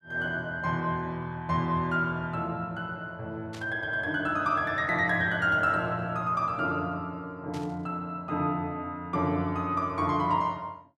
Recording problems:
burst of static; at 3.5 s and at 7.5 s; peak -12 dB vs average level

